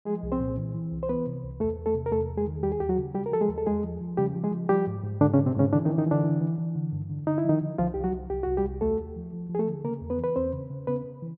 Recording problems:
none

